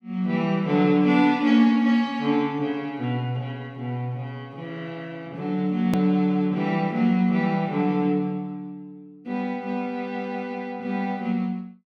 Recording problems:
edit click; at 6 s

